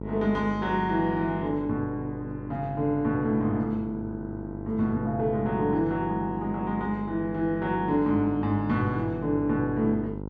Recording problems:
hum; 50 Hz, harmonics up to 1.1 kHz, SNR 10 dB

